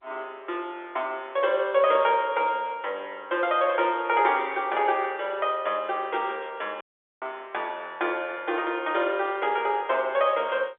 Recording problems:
phone line; 320 Hz to 3.6 kHz, G.711
dropout; at 7 s

